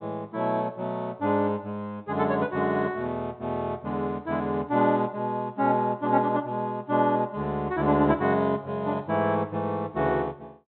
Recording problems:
low-pass filter; nothing above 4 kHz

